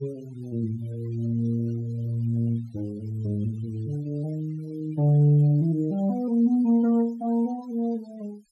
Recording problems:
noise reduction artefacts; signal-to-artefact ratio 27 dB

